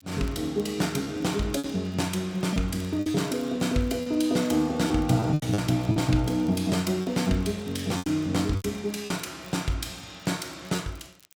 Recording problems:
crackle; vinyl, SNR 28 dB
packet loss; 7% of the sound replaced, filled with repeated pitch periods

